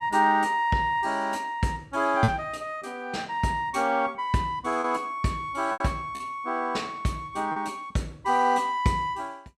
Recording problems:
lost packets; 3% of the sound replaced, filled with repeated pitch periods

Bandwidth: 14 kHz